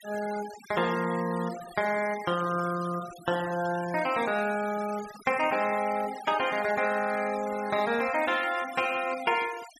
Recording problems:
noise reduction artefacts; signal-to-artefact ratio 15 dB

